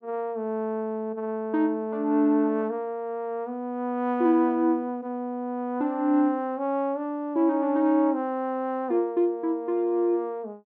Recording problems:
none

